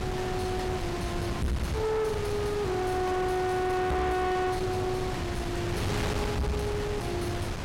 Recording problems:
distorted audio; soft clipping, signal-to-distortion ratio 6 dB
wind on the microphone; below 1.1 kHz, SNR 3 dB

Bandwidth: 16 kHz